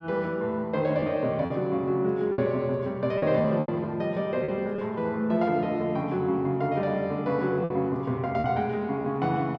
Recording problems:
lost packets; 5% of the sound replaced, filled with repeated pitch periods

